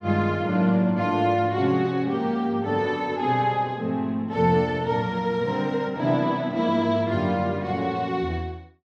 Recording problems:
none

